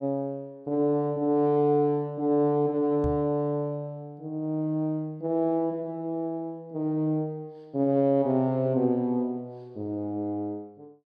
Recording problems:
microphone thump; at 3 s; peak -2 dB vs average level

